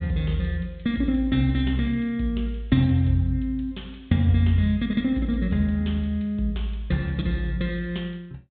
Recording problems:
treble missing; nothing above 4 kHz

